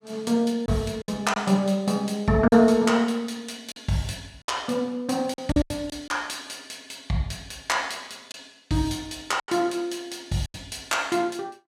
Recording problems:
lost packets; 5% of the sound replaced, filled with silence

